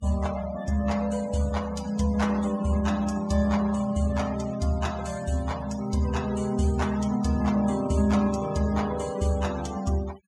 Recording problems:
noise reduction artefacts; signal-to-artefact ratio 16 dB

